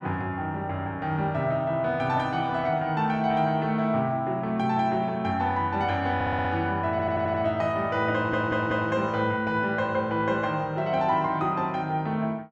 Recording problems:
audio stuttering; at 6 s, at 7 s and at 8 s

